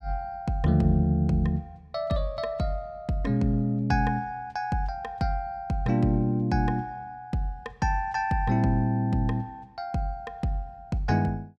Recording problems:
none

